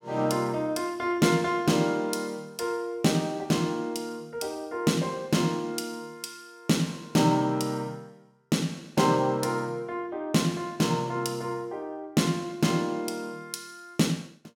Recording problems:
none

